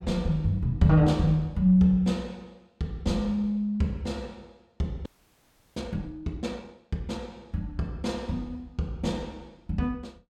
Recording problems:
audio freezing; at 5 s for 0.5 s

